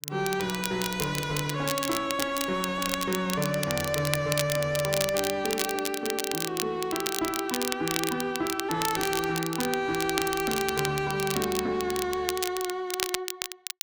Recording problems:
distortion; soft clipping, signal-to-distortion ratio 10 dB
crackling; vinyl, SNR 4 dB

